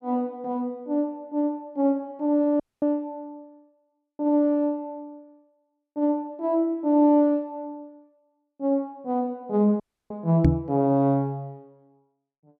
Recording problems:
dropout; at 2.5 s and at 10 s
microphone thump; at 10 s; peak +9 dB vs average level

